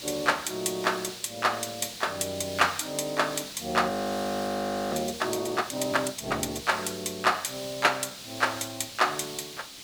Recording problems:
hiss; SNR 11 dB
frozen audio; at 4 s for 1 s

